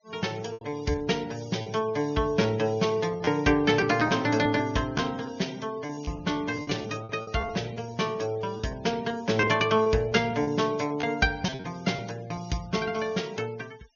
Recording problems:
treble missing; nothing above 6.7 kHz
denoising artefacts; signal-to-artefact ratio 23 dB
packet loss; 8% of the sound replaced, filled with repeated pitch periods

